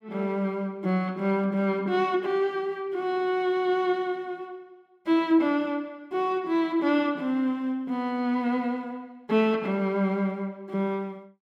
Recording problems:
none

